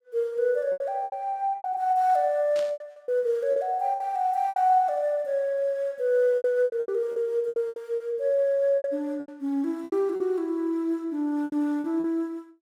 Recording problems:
packet loss; 12% of the sound replaced, filled with repeated pitch periods
burst of static; at 2.5 s; peak -10 dB vs average level

